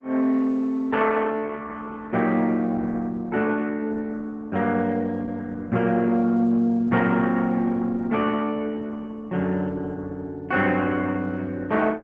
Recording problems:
lossy compression; Opus, log-spectral distance 3 dB

